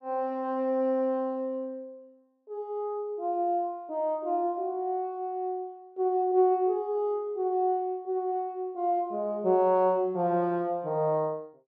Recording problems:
none

